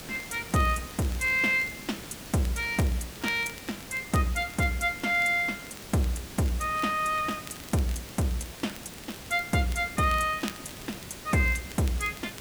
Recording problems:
background hiss; slope -3 dB per octave, SNR 13 dB
crackle; vinyl, SNR 21 dB

